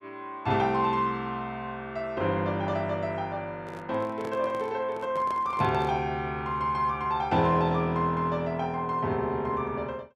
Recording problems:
microphone handling noise; from 3.5 to 6 s; peak -8 dB vs average level

